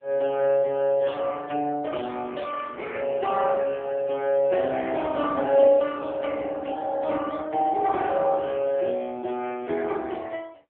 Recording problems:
telephone audio; 220 Hz to 3.5 kHz, AMR-NB

